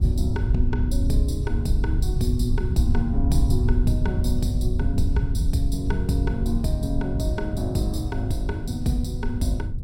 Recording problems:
rumble; below 92 Hz, SNR -1 dB

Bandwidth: 16.5 kHz